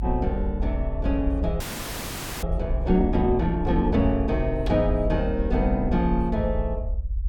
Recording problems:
low-frequency rumble; below 70 Hz, SNR 4 dB
frozen audio; at 1.5 s for 1 s

